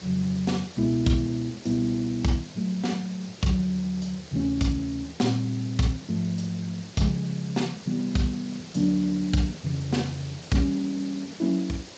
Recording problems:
lossy compression; Speex, log-spectral distance 6 dB, nothing above 7.6 kHz
hiss; SNR 17 dB

